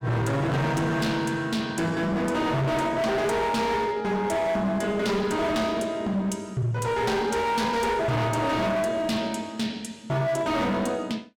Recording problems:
distortion; hard clipping, signal-to-distortion ratio 7 dB

